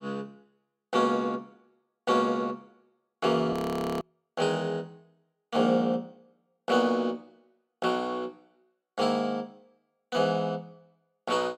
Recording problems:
audio freezing; at 3.5 s

